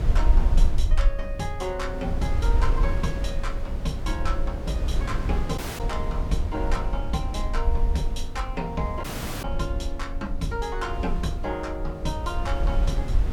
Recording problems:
background hiss; slope -8 dB per octave, SNR 21 dB
rumble; below 50 Hz, SNR -1 dB
wind on the microphone; below 84 Hz, SNR 1 dB
dropout; at 5.5 s and at 9 s

